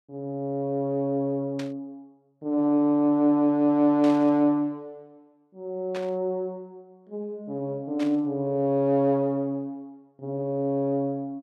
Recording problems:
static burst; 4 times, first at 1.5 s; peak -10 dB vs average level

